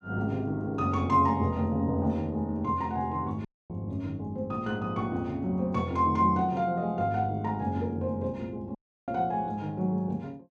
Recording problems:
dropout; at 3.5 s and at 9 s

